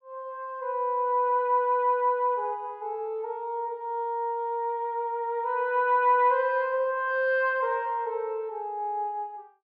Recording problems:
none

